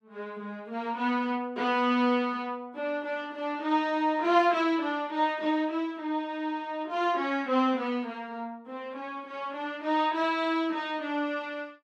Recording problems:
none

